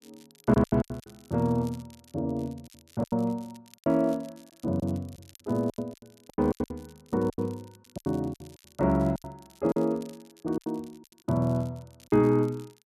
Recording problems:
crackling; vinyl, SNR 27 dB
lost packets; 14% of the sound replaced, filled with silence

